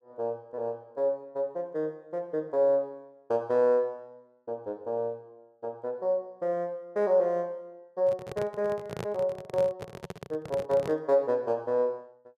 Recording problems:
microphone handling noise; from 8 to 11 s; peak -2 dB vs average level

